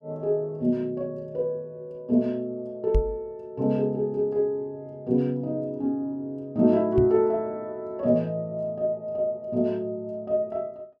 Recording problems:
microphone thump; at 3 s and at 7 s; peak +6 dB vs average level

